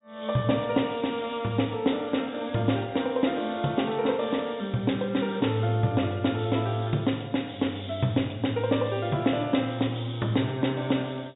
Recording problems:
treble missing; nothing above 4 kHz

